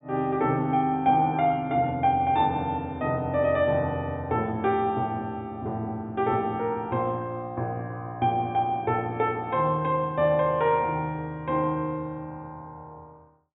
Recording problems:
treble missing; nothing above 4 kHz

